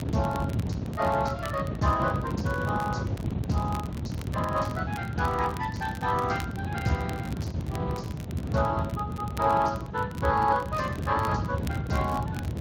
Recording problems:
lossy codec; Speex, log-spectral distance 3 dB
wind on the microphone; below 250 Hz, SNR 3 dB
crackling; vinyl, SNR 19 dB

